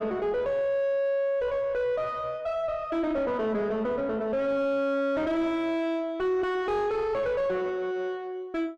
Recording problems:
distortion; soft clipping, signal-to-distortion ratio 7 dB

